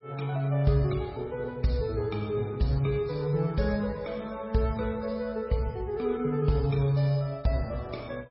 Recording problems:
lossy compression; MP3, log-spectral distance 2 dB, nothing above 5.3 kHz

